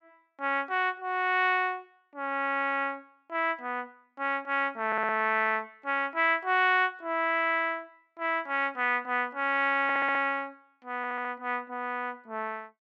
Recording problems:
stutter; at 5 s, at 10 s and at 11 s

